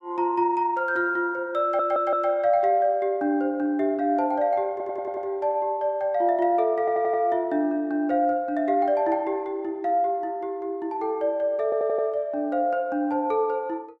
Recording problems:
audio stuttering; 4 times, first at 1.5 s

